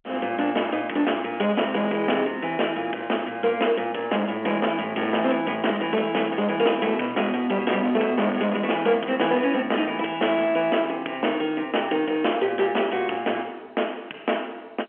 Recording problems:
telephone audio; 260 Hz to 3.2 kHz, G.711
distorted audio; soft clipping, signal-to-distortion ratio 10 dB

